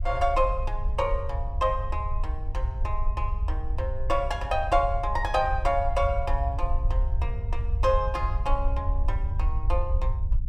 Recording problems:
rumble; below 66 Hz, SNR 1 dB

